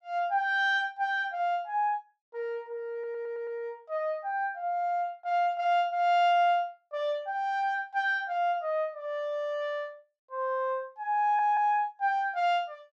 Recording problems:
audio stuttering; at 3 s and at 11 s

